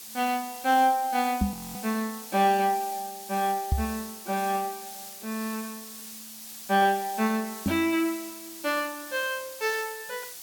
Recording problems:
hiss; slope +2 dB per octave, SNR 12 dB
microphone bump; at 1.5 s, at 3.5 s and at 7.5 s; peak +5 dB vs average level
audio freezing; at 1.5 s

